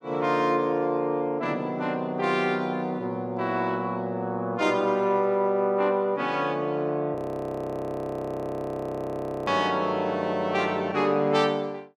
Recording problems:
frozen audio; at 7 s for 2.5 s

